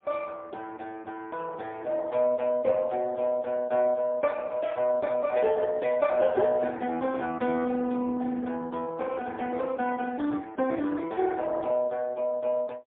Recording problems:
phone line; 280 Hz to 3.5 kHz, AMR-NB, then MP3

